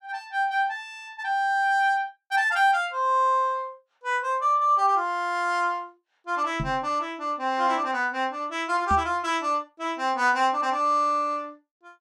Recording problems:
microphone thump; at 6.5 s and at 9 s; peak -2 dB vs average level

